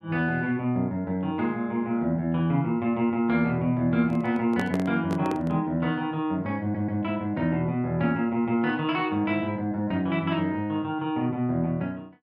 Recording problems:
handling noise; from 4 to 5.5 s; peak -1 dB vs average level
audio stuttering; at 6.5 s

